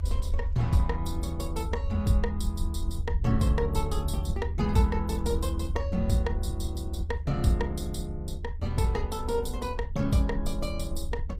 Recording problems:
lossy compression; Opus, log-spectral distance 2 dB, nothing above 15.5 kHz
low-frequency rumble; below 78 Hz, SNR 3 dB

